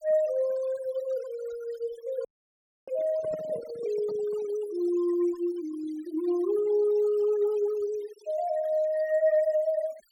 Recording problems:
denoising artefacts; signal-to-artefact ratio 22 dB
dropout; at 2.5 s for 0.5 s
handling noise; from 3 to 4.5 s; peak -8 dB vs average level

